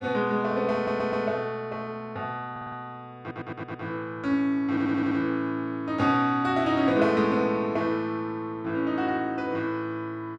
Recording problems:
stutter; 4 times, first at 1 s

